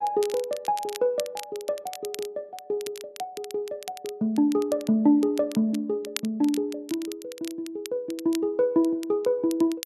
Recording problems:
crackle; vinyl, SNR 15 dB

